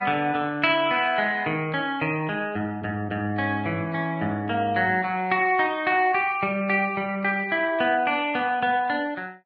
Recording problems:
lossy compression; Vorbis, log-spectral distance 2 dB

